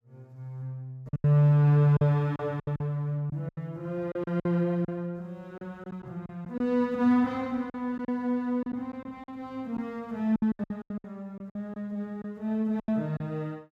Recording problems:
lost packets; 11% of the sound replaced, filled with silence

